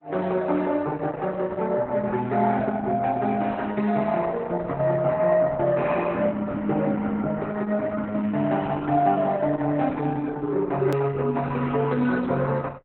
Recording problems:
lossy codec; Opus, log-spectral distance 3 dB, nothing above 16.6 kHz
edit click; at 11 s

